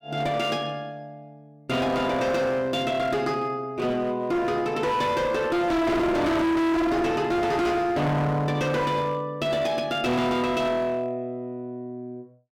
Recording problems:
distorted audio; hard clipping, signal-to-distortion ratio 6 dB

